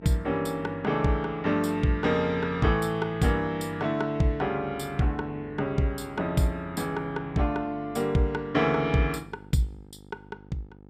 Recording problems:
hum; 50 Hz, harmonics up to 1 kHz, SNR 20 dB

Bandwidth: 15 kHz